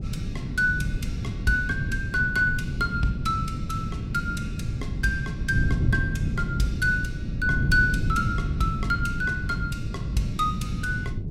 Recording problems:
wind noise; below 170 Hz, SNR 2 dB

